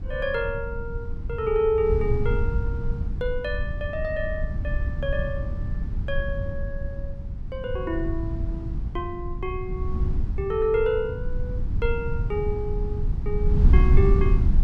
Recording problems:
wind noise; below 88 Hz, SNR -1 dB

